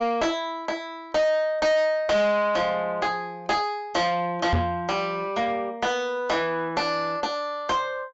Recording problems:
treble missing; nothing above 8 kHz
distorted audio; soft clipping, signal-to-distortion ratio 6 dB
microphone thump; at 4.5 s; peak +6 dB vs average level

